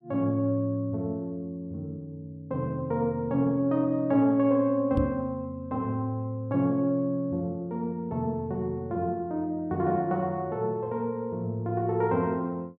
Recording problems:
knock on the microphone; at 5 s; peak +4 dB vs average level

